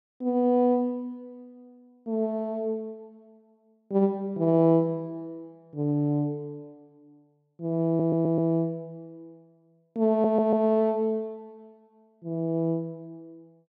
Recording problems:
audio stuttering; at 8 s and at 10 s

